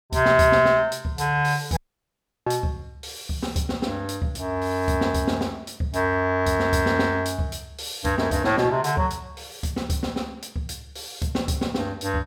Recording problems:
dropout; at 2 s for 0.5 s

